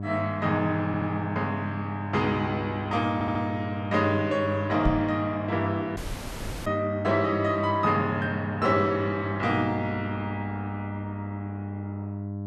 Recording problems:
electrical hum; 50 Hz, harmonics up to 700 Hz, SNR 7 dB
audio stuttering; at 1 s and at 3 s
microphone bump; at 5 s; peak +4 dB vs average level
dropout; at 6 s for 0.5 s

